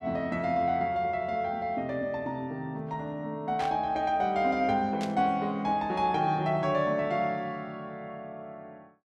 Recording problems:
burst of static; at 3.5 s and at 5 s; peak -7 dB vs average level

